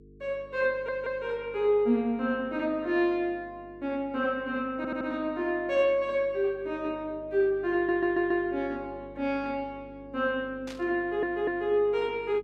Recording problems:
hum; 50 Hz, harmonics up to 450 Hz, SNR 23 dB
audio stuttering; 4 times, first at 0.5 s
static burst; at 11 s; peak -11 dB vs average level

